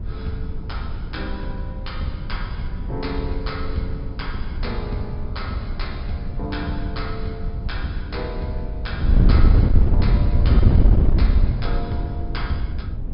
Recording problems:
treble cut off; nothing above 5.5 kHz
rumble; below 98 Hz, SNR 8 dB
wind on the microphone; below 100 Hz, SNR -8 dB

